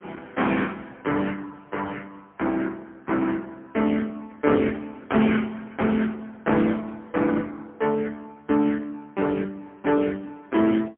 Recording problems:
phone line; 170 Hz to 3.8 kHz, AMR-NB, then MP3

